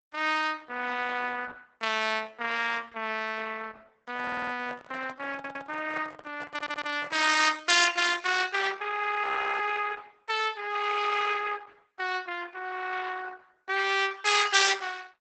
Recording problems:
lossy compression; Opus, log-spectral distance 6 dB, nothing above 8 kHz
microphone handling noise; from 4 to 7.5 s; peak -10 dB vs average level
stutter; at 4 s, at 5.5 s and at 6.5 s
audio freezing; at 9 s

